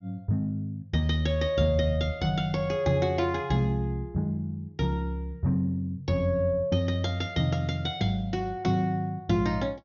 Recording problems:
treble cut off; nothing above 6.8 kHz

